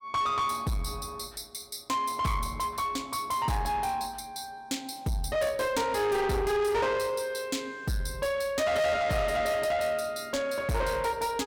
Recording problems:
distortion; soft clipping, signal-to-distortion ratio 8 dB

